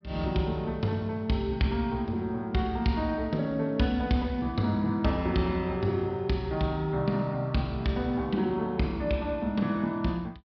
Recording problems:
treble cut off; nothing above 5.5 kHz

